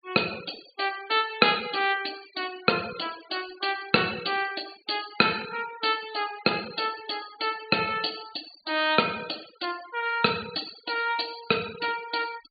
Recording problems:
treble missing; nothing above 4.7 kHz
noise reduction artefacts; signal-to-artefact ratio 16 dB

